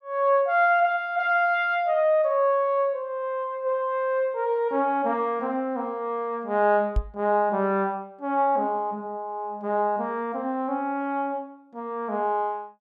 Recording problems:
microphone thump; at 7 s; peak +3 dB vs average level

